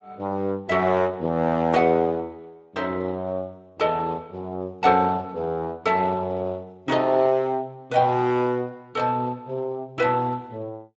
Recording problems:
lossy compression; Speex, log-spectral distance 2 dB, nothing above 7.3 kHz

